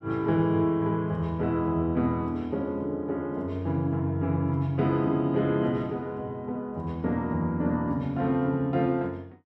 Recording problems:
none

